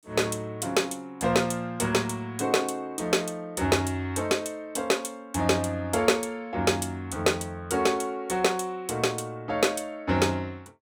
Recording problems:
none

